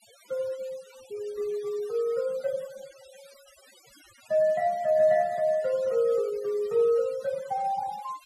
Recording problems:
denoising artefacts; signal-to-artefact ratio 24 dB

